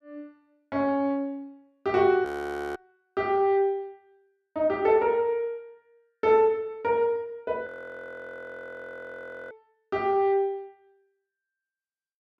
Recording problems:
frozen audio; at 2.5 s for 0.5 s and at 7.5 s for 2 s

